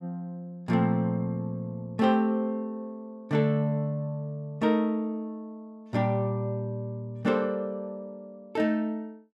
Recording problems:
none

